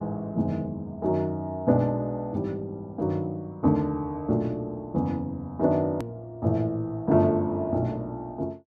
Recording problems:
hard cut with a click; at 6 s

